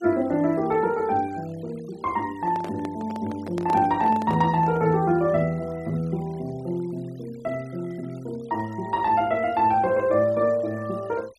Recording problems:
denoising artefacts; signal-to-artefact ratio 26 dB
microphone handling noise; from 2.5 to 5 s; peak -6 dB vs average level

